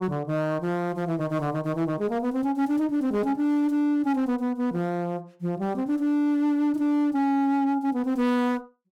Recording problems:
distorted audio; hard clipping, signal-to-distortion ratio 10 dB

